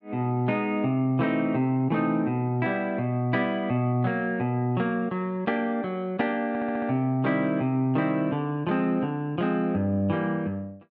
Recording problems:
audio stuttering; at 6.5 s

